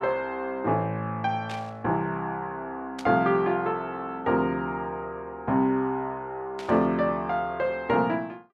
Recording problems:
static burst; at 1.5 s, at 3 s and at 6.5 s; peak -8 dB vs average level

